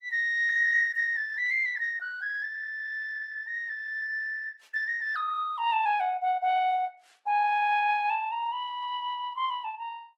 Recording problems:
lossy compression; Opus, log-spectral distance 2 dB

